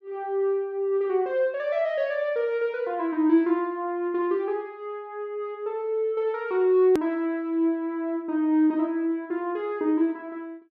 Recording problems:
edit click; at 7 s

